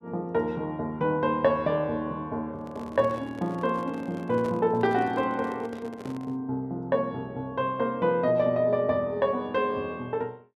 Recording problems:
handling noise; from 2.5 to 6.5 s; peak -7 dB vs average level

